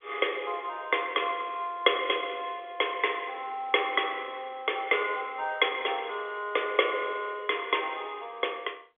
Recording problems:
telephone audio; 340 Hz to 3.5 kHz, G.711

